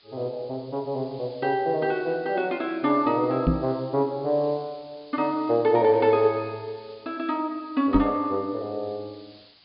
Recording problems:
treble cut off; nothing above 4.9 kHz
hiss; SNR 27 dB
microphone bump; at 3.5 s and at 8 s; peak +7 dB vs average level

